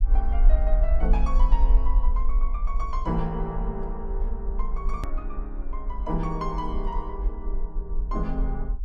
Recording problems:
rumble; below 44 Hz, SNR -5 dB
edit click; at 5 s

